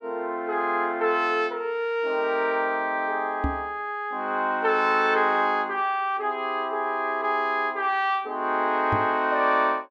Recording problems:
knock on the microphone; at 3.5 s and at 9 s; peak +1 dB vs average level

